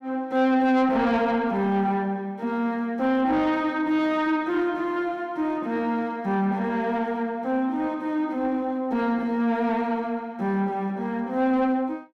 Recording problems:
distorted audio; soft clipping, signal-to-distortion ratio 11 dB

